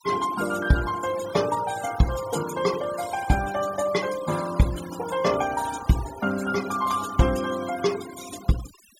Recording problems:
denoising artefacts; signal-to-artefact ratio 13 dB

